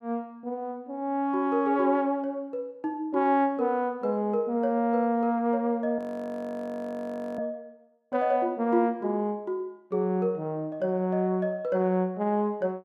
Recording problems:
audio freezing; at 6 s for 1.5 s

